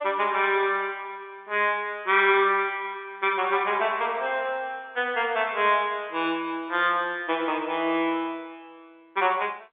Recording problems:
telephone audio; 260 Hz to 3.5 kHz, G.711

